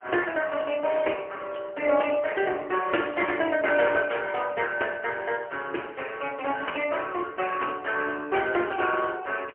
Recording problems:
telephone audio; 300 Hz to 3 kHz, AMR-NB, then MP3

